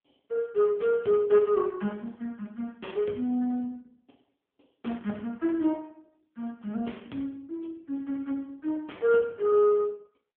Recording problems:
phone line; 190 Hz to 3.5 kHz, AMR-NB

